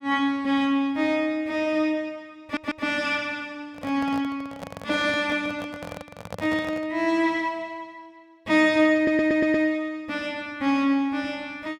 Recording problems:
audio stuttering; at 2.5 s and at 9 s
handling noise; from 3.5 to 7 s; peak -5 dB vs average level

